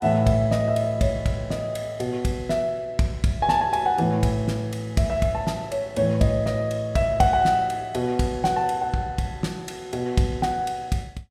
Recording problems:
none

